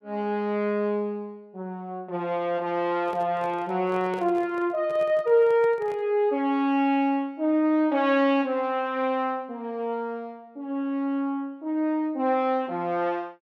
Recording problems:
microphone handling noise; from 3 to 6 s; peak -9 dB vs average level

